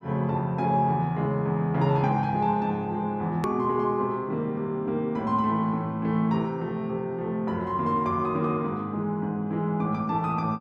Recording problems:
hard cut with a click; at 3.5 s

